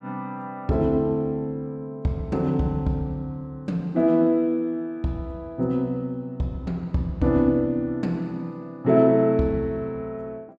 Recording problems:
none

